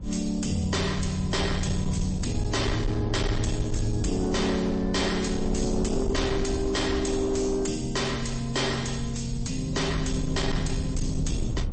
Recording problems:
lossy codec; MP3, log-spectral distance 4 dB, nothing above 8.2 kHz
distorted audio; soft clipping, signal-to-distortion ratio 10 dB
low-frequency rumble; below 120 Hz, SNR 6 dB

